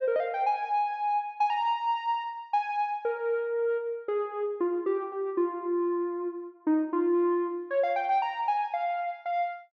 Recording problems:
low-pass filter; nothing above 8 kHz

